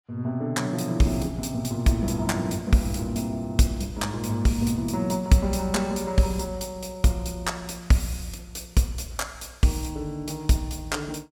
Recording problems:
none

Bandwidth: 17 kHz